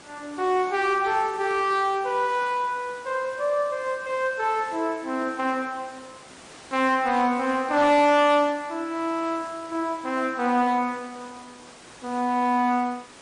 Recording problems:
lossy compression; MP3, log-spectral distance 5 dB
distortion; hard clipping, uneven, signal-to-distortion ratio 12 dB
background hiss; slope -3 dB per octave, SNR 21 dB

